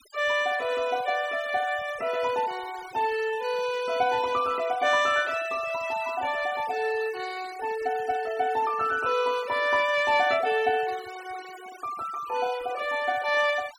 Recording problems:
denoising artefacts; signal-to-artefact ratio 17 dB

